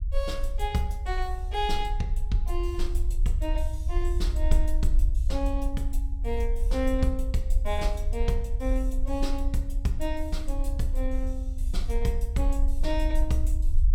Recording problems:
low-frequency rumble; below 50 Hz, SNR -3 dB

